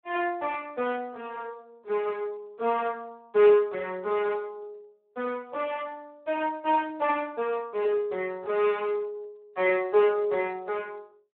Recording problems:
phone line; 300 Hz to 3.5 kHz, Speex

